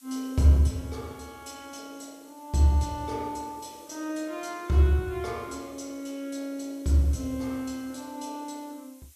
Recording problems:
background hiss; slope +3 dB per octave, SNR 27 dB

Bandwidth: 14.5 kHz